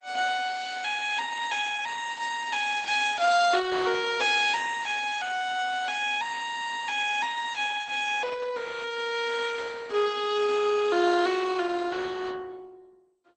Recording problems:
codec artefacts; MP2, then Opus, log-spectral distance 5 dB, nothing above 8.2 kHz

